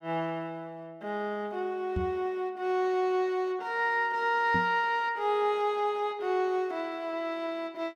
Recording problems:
microphone bump; at 2 s and at 4.5 s; peak 0 dB vs average level

